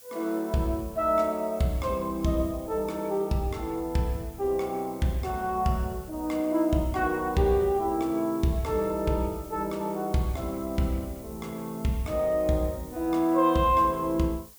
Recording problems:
hiss; SNR 21 dB

